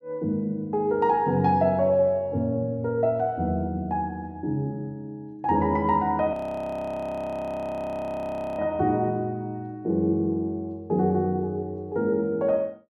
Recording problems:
frozen audio; at 6.5 s for 2.5 s

